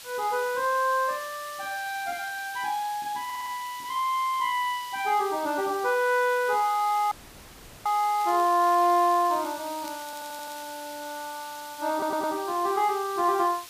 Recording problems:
background hiss; slope +2 dB per octave, SNR 16 dB
stutter; at 3.5 s, at 10 s and at 12 s
dropout; at 7 s for 0.5 s
crackling; from 8 to 11 s; loose cable, SNR 23 dB

